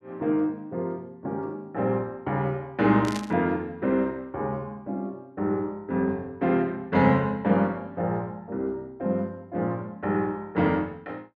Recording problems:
burst of static; at 3 s; peak -5 dB vs average level

